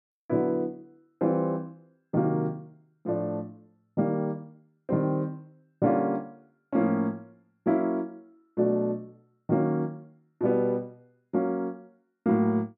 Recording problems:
none

